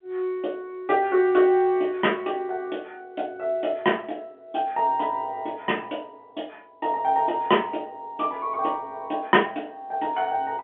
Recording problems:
telephone audio; 190 Hz to 3.4 kHz, G.711

